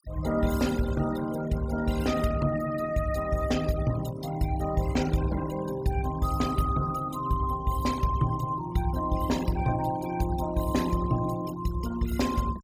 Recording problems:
noise reduction artefacts; signal-to-artefact ratio 14 dB

